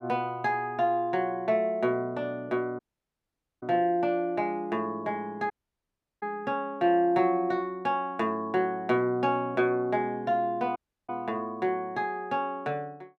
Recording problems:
dropout; at 3 s for 1 s, at 5.5 s for 0.5 s and at 11 s

